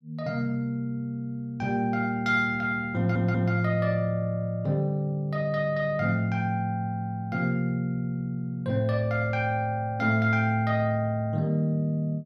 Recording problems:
audio stuttering; at 3 s

